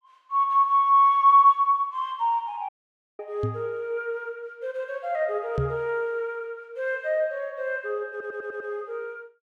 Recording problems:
dropout; at 2.5 s for 0.5 s
knock on the microphone; at 3.5 s and at 5.5 s; peak 0 dB vs average level
audio stuttering; at 8 s

